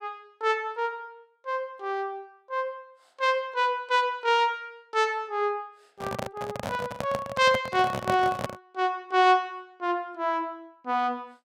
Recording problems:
microphone handling noise; from 6 to 8.5 s; peak +2 dB vs average level

